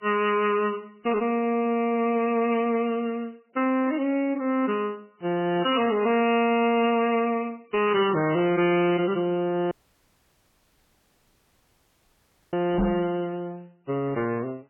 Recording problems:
lossy codec; MP3, then MP3, log-spectral distance 3 dB, nothing above 3 kHz
distortion; hard clipping, signal-to-distortion ratio 10 dB
audio cutting out; at 9.5 s for 3 s
microphone thump; at 13 s; peak +3 dB vs average level

